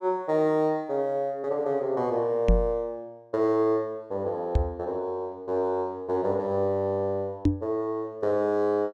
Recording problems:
microphone bump; at 2.5 s, at 4.5 s and at 7.5 s; peak +8 dB vs average level

